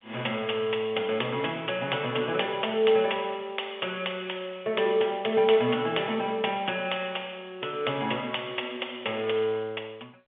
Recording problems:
telephone audio; 190 Hz to 3.3 kHz, G.711

